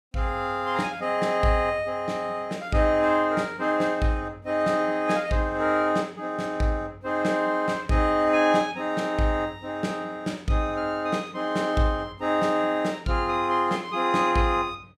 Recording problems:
none

